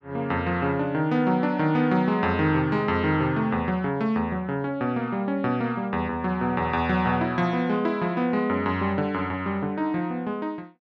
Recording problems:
none

